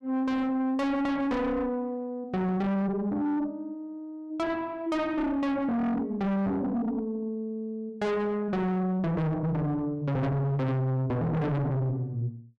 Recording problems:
distortion; soft clipping, signal-to-distortion ratio 6 dB

